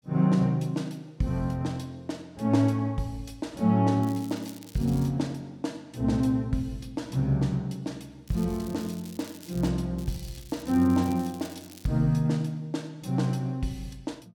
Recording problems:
crackling; from 4 to 5 s, from 8.5 to 9.5 s and from 10 to 12 s; loose cable, SNR 21 dB

